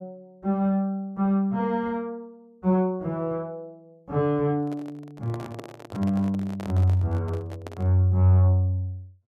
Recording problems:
handling noise; from 4.5 to 8 s; peak -9 dB vs average level

